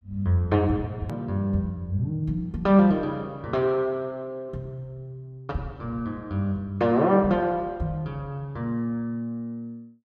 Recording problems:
edit click; at 1 s

